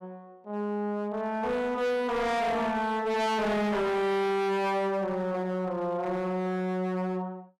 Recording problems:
distortion; hard clipping, uneven, signal-to-distortion ratio 6 dB

